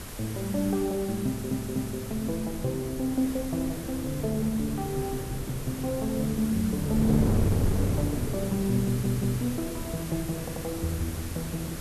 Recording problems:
background hiss; slope -1 dB per octave, SNR 11 dB
wind on the microphone; below 300 Hz, SNR 6 dB
audio stuttering; at 1.5 s, at 9 s and at 10 s

